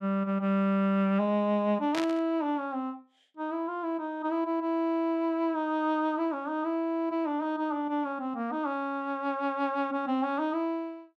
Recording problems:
burst of static; at 2 s; peak -1 dB vs average level

